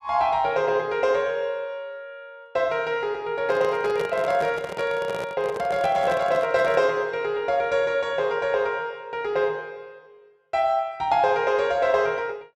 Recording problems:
handling noise; from 3.5 to 7 s; peak -4 dB vs average level

